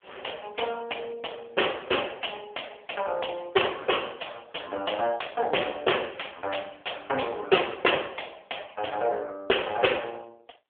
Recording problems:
telephone audio; 320 Hz to 3.4 kHz, AMR-NB

